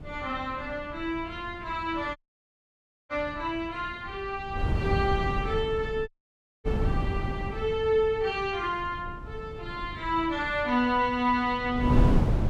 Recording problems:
wind on the microphone; below 170 Hz, SNR 3 dB
dropout; at 2 s for 1 s and at 6 s for 0.5 s

